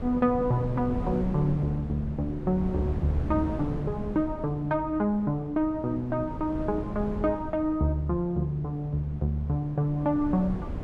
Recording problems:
wind on the microphone; below 250 Hz, SNR 9 dB

